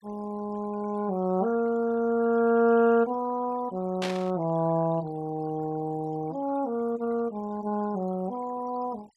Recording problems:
denoising artefacts; signal-to-artefact ratio 22 dB
burst of static; at 4 s; peak -2 dB vs average level

